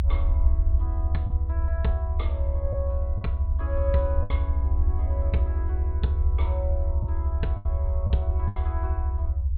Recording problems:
low-pass filter; nothing above 4.3 kHz
low-frequency rumble; below 78 Hz, SNR -8 dB
packet loss; 4% of the sound replaced, filled with the last packet

